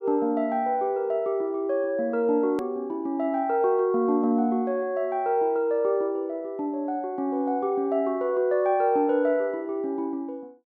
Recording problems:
click at an edit; at 2.5 s

